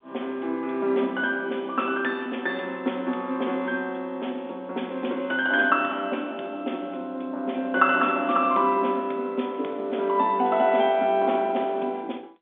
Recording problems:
telephone audio; 220 Hz to 3.6 kHz, G.711

